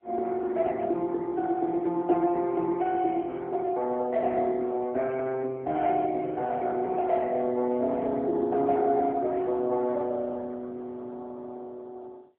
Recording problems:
phone line; 280 Hz to 3 kHz, AMR-NB

